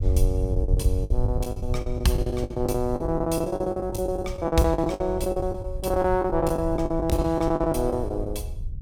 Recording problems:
rumble; below 92 Hz, SNR 5 dB
lost packets; 21% of the sound replaced, filled with the last packet

